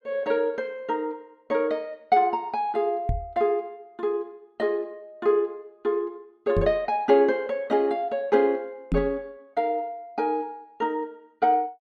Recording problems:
microphone thump; at 3 s, at 6.5 s and at 9 s; peak +3 dB vs average level

